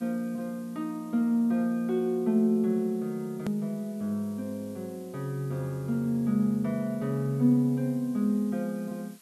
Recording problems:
hiss; slope +2 dB per octave, SNR 27 dB
hard cut with a click; at 3.5 s

